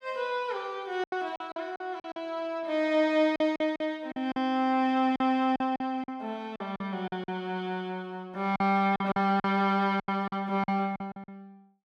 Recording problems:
packet loss; 11% of the sound replaced, filled with silence

